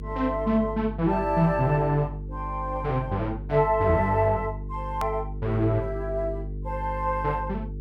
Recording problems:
hum; 50 Hz, harmonics up to 450 Hz, SNR 10 dB
click at an edit; at 5 s

